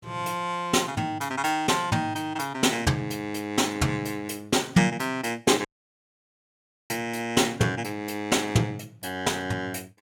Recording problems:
audio cutting out; at 5.5 s for 1.5 s

